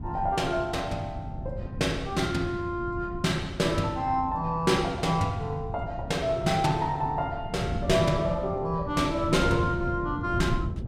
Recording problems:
wind noise; below 180 Hz, SNR 8 dB

